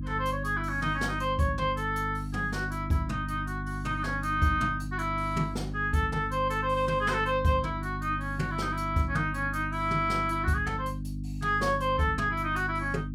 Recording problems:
hum; 50 Hz, harmonics up to 300 Hz, SNR 7 dB

